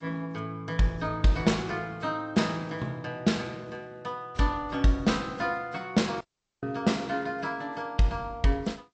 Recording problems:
lossy compression; G.722, then AAC, log-spectral distance 2 dB, nothing above 7.6 kHz
dropout; at 6 s

